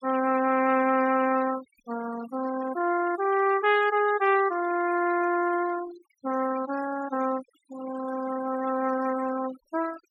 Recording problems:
noise reduction artefacts; signal-to-artefact ratio 15 dB

